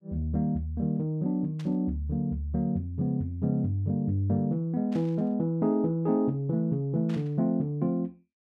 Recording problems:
burst of static; at 1.5 s, at 5 s and at 7 s; peak -14 dB vs average level

